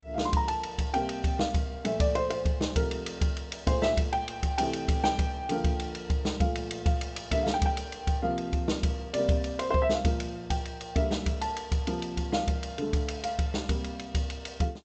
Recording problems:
lossy compression; G.722, log-spectral distance 3 dB, nothing above 7.8 kHz

